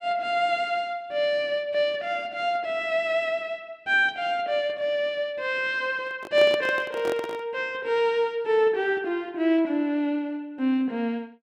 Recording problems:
handling noise; from 6 to 7.5 s; peak -3 dB vs average level

